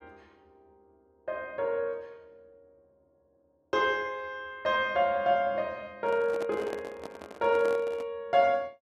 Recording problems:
handling noise; from 6 to 8 s; peak -6 dB vs average level

